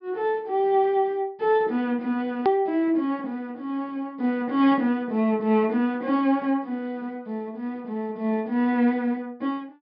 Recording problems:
treble cut off; nothing above 5.5 kHz
hard cut with a click; at 2.5 s

